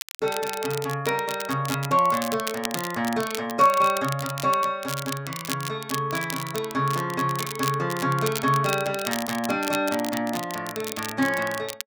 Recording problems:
crackling; vinyl, SNR 9 dB

